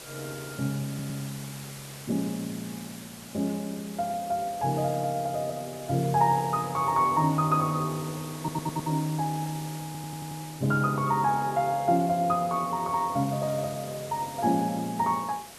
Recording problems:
hiss; slope -2 dB per octave, SNR 15 dB
stutter; at 1 s, at 8.5 s and at 10 s

